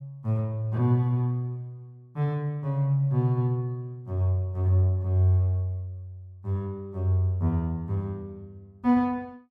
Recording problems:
none

